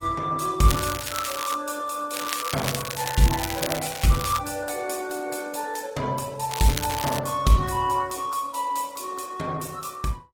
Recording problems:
lossy codec; Opus, log-spectral distance 6 dB, nothing above 17 kHz
crackle; at 0.5 s, from 2 to 4.5 s and at 6.5 s; loose cable, SNR 7 dB

